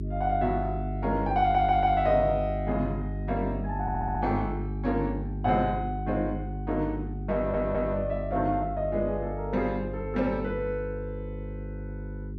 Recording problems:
hum; 50 Hz, harmonics up to 400 Hz, SNR 6 dB
stutter; at 1.5 s, at 4 s and at 7.5 s

